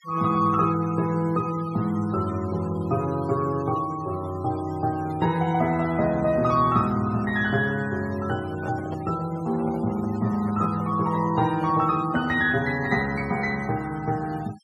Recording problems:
denoising artefacts; signal-to-artefact ratio 20 dB
microphone handling noise; from 8.5 to 12 s; peak -8 dB vs average level

